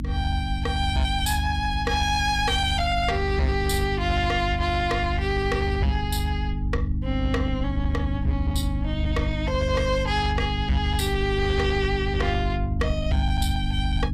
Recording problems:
distortion; soft clipping, signal-to-distortion ratio 12 dB
hum; 50 Hz, harmonics up to 300 Hz, SNR 4 dB
low-frequency rumble; below 78 Hz, strongest tone 76 Hz, SNR 4 dB

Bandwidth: 15 kHz